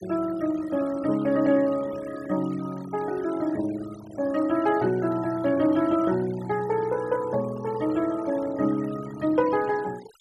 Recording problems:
denoising artefacts; signal-to-artefact ratio 19 dB

